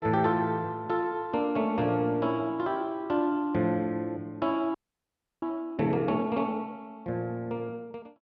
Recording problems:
frozen audio; at 5 s for 0.5 s

